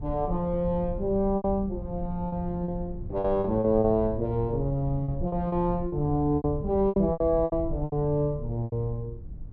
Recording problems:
low-frequency rumble; below 98 Hz, SNR 11 dB
lost packets; 10% of the sound replaced, filled with repeated pitch periods

